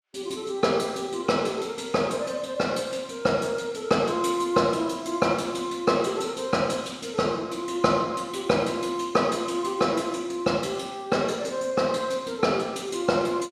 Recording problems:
none

